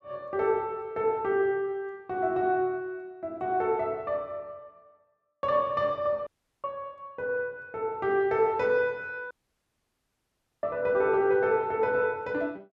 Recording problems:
audio cutting out; at 6.5 s and at 9.5 s for 1.5 s

